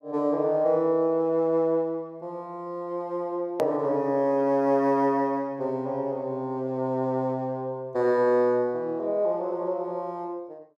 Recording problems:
edit click; at 3.5 s

